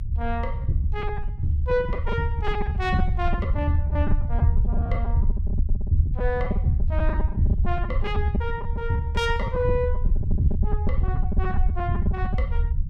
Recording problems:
low-frequency rumble; below 78 Hz, SNR -2 dB
packet loss; 13% of the sound replaced, filled with repeated pitch periods

